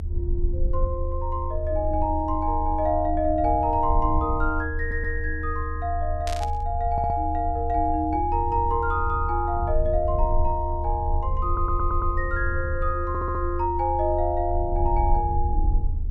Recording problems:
rumble; below 78 Hz, strongest tone 26 Hz, SNR 3 dB
audio stuttering; 4 times, first at 5 s
burst of static; at 6.5 s; peak -4 dB vs average level

